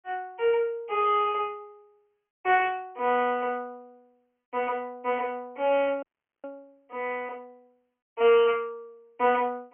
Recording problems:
telephone audio; 260 Hz to 3.2 kHz, G.726
audio freezing; at 6 s

